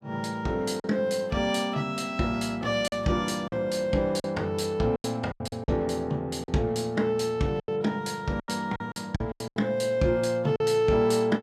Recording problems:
packet loss; 8% of the sound replaced, filled with silence

